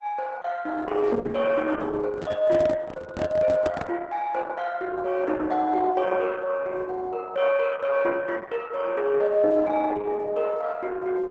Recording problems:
lossy codec; Opus, log-spectral distance 4 dB, nothing above 7.6 kHz
handling noise; from 2 to 4 s; peak -1 dB vs average level

